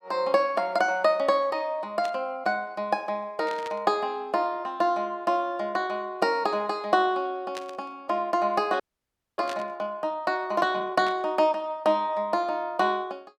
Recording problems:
static burst; 5 times, first at 2 s; peak -7 dB vs average level
frozen audio; at 9 s for 0.5 s

